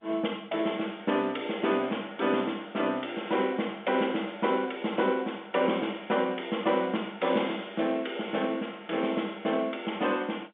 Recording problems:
telephone audio; 220 Hz to 3.6 kHz, G.711

